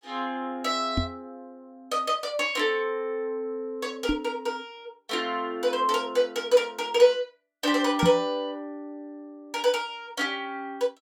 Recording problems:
knock on the microphone; at 1 s, at 4 s and at 8 s; peak +5 dB vs average level

